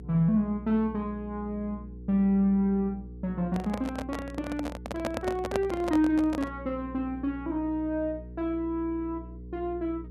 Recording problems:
hum; 60 Hz, harmonics up to 480 Hz, SNR 14 dB
microphone handling noise; from 3.5 to 6.5 s; peak +2 dB vs average level

